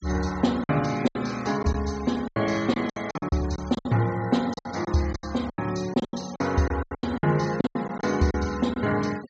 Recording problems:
treble missing; nothing above 8 kHz
denoising artefacts; signal-to-artefact ratio 19 dB
lost packets; 15% of the sound replaced, filled with silence

